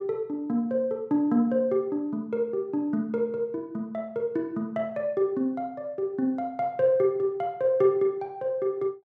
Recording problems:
none

